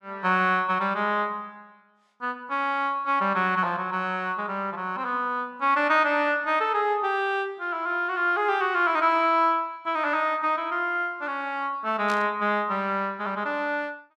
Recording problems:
burst of static; at 12 s; peak -6 dB vs average level

